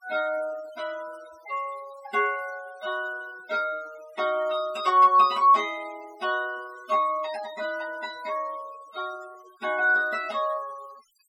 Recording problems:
denoising artefacts; signal-to-artefact ratio 21 dB

